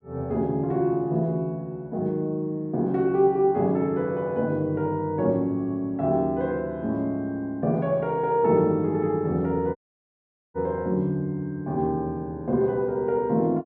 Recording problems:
audio cutting out; at 10 s for 1 s

